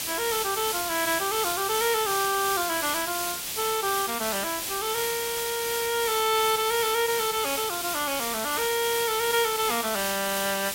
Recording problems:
background hiss; slope +1 dB per octave, SNR 2 dB

